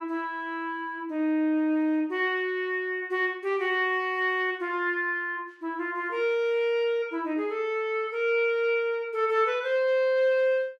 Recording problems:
none

